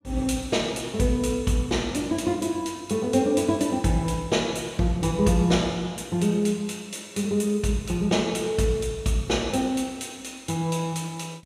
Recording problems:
none

